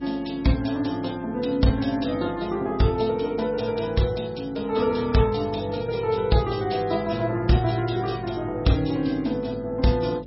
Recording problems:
lossy compression; MP3, log-spectral distance 5 dB, nothing above 5.5 kHz
hum; 50 Hz, harmonics up to 550 Hz, SNR 18 dB

